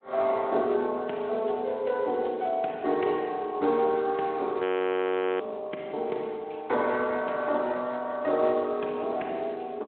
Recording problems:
telephone audio; 300 Hz to 3.8 kHz, Speex
audio freezing; at 4.5 s for 1 s

